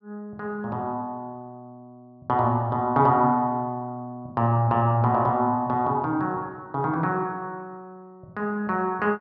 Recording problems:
low-pass filter; nothing above 6 kHz

